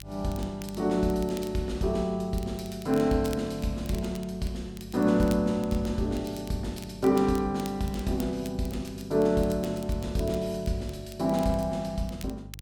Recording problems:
electrical hum; 50 Hz, harmonics up to 450 Hz, SNR 17 dB
crackling; vinyl, SNR 20 dB

